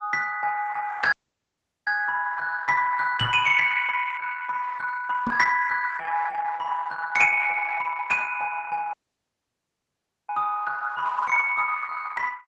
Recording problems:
lossy compression; Opus, log-spectral distance 4 dB, nothing above 6.9 kHz
dropout; at 1 s for 1 s and at 9 s for 1.5 s
microphone thump; at 3 s and at 5.5 s; peak -1 dB vs average level

